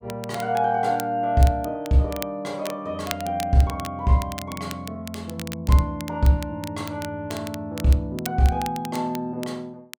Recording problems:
crackling; vinyl, SNR 15 dB

